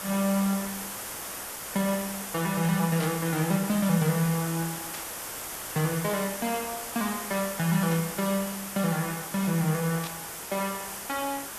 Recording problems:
hiss; slope -2 dB per octave, SNR 6 dB
burst of static; 4 times, first at 3 s; peak -6 dB vs average level

